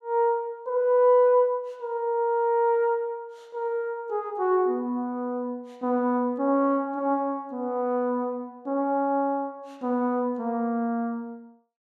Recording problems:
none

